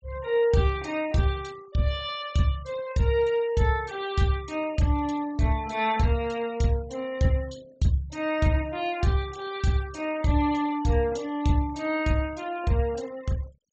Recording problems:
treble missing; nothing above 8 kHz
denoising artefacts; signal-to-artefact ratio 22 dB

